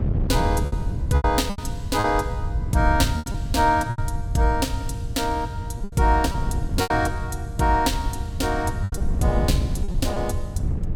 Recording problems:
hum; 50 Hz, harmonics up to 1 kHz, SNR 20 dB
rumble; below 100 Hz, SNR 7 dB
wind on the microphone; below 140 Hz, SNR 6 dB
packet loss; 8% of the sound replaced, filled with repeated pitch periods

